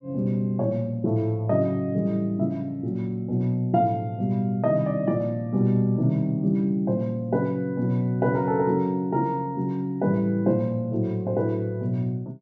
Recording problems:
none

